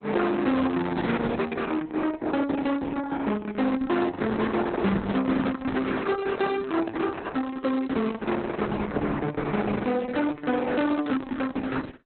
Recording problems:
codec artefacts; Opus, log-spectral distance 4 dB, nothing above 4 kHz
distortion; soft clipping, signal-to-distortion ratio 11 dB
microphone handling noise; from 4 to 7.5 s; peak -4 dB vs average level

